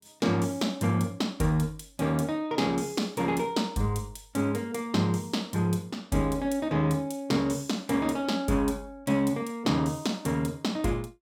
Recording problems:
none

